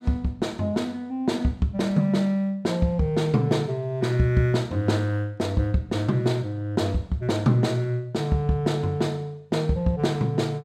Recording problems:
none

